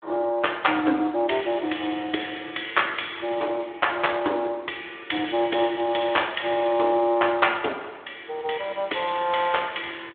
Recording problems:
phone line; 280 Hz to 3.6 kHz, Speex

